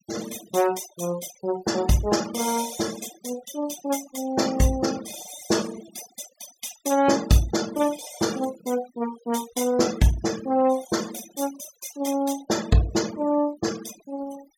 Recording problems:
noise reduction artefacts; signal-to-artefact ratio 14 dB

